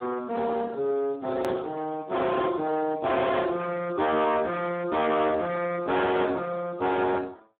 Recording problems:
phone line; 220 Hz to 3.8 kHz, Speex
distortion; soft clipping, signal-to-distortion ratio 6 dB
click at an edit; at 1.5 s

